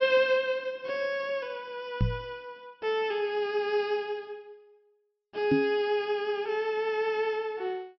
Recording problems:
treble cut off; nothing above 5.9 kHz
microphone thump; at 2 s and at 5.5 s; peak +7 dB vs average level

